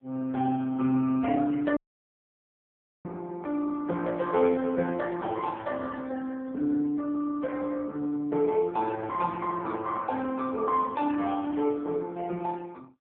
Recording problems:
telephone audio; 150 Hz to 3.1 kHz, AMR-NB
audio cutting out; at 2 s for 1.5 s

